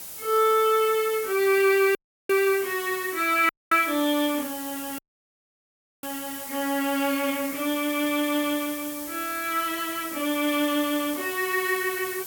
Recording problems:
background hiss; SNR 10 dB
dropout; at 2 s, at 3.5 s and at 5 s for 1 s

